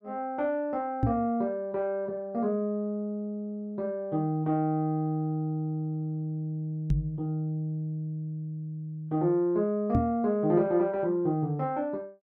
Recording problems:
microphone thump; at 1 s, at 7 s and at 10 s; peak +7 dB vs average level

